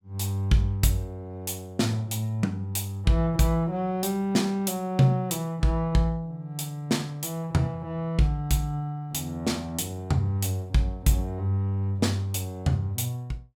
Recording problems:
none

